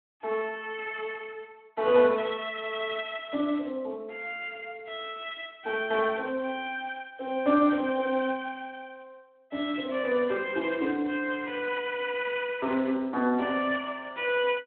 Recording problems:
telephone audio; 240 Hz to 3.4 kHz, Speex

